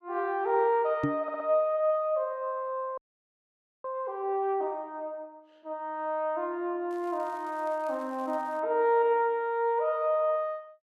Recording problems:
microphone thump; at 1 s; peak +4 dB vs average level
stutter; at 1 s
frozen audio; at 3 s for 1 s
crackle; from 7 to 8.5 s; loose cable, SNR 30 dB

